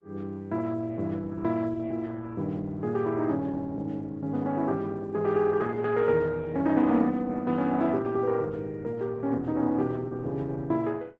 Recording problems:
lossy codec; Opus, log-spectral distance 2 dB

